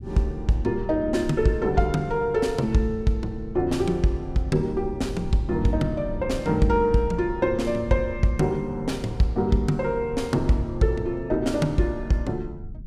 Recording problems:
low-frequency rumble; below 110 Hz, SNR 13 dB

